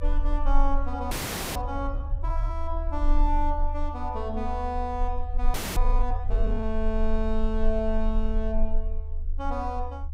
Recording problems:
low-frequency rumble; below 38 Hz, strongest tone 24 Hz, SNR -1 dB
audio freezing; at 1 s and at 5.5 s

